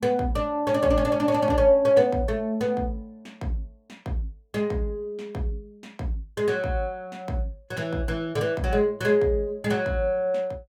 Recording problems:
none

